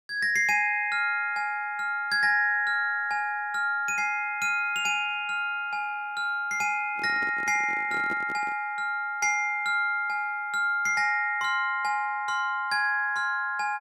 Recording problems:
microphone handling noise; from 7 to 8.5 s; peak -8 dB vs average level

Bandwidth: 16 kHz